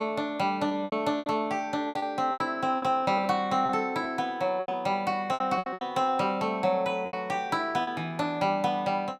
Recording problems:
packet loss; 10% of the sound replaced, filled with repeated pitch periods

